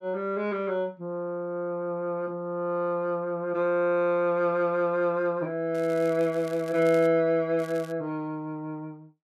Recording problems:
crackling; from 6 to 7 s and at 7.5 s; loose cable, SNR 23 dB

